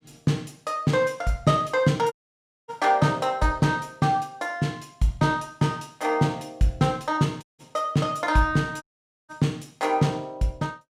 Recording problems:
dropout; at 2 s for 0.5 s, at 7.5 s and at 9 s

